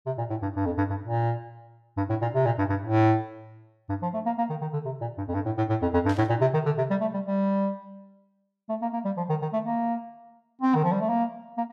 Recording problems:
static burst; at 6 s; peak -12 dB vs average level

